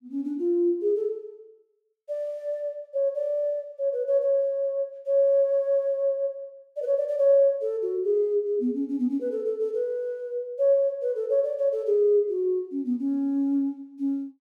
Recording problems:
none

